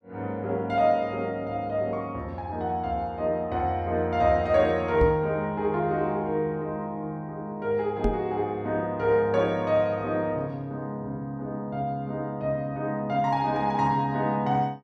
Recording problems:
microphone thump; at 5 s and at 8 s; peak +4 dB vs average level

